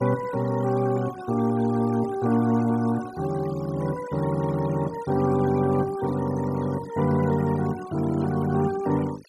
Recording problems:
denoising artefacts; signal-to-artefact ratio 19 dB

